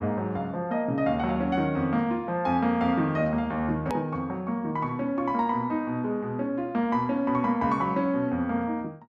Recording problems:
click at an edit; at 4 s

